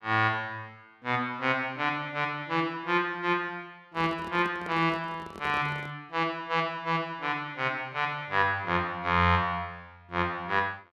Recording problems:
microphone handling noise; from 4 to 6 s; peak -10 dB vs average level

